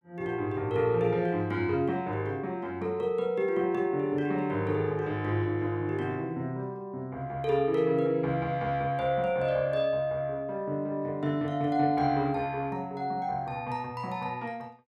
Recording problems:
none

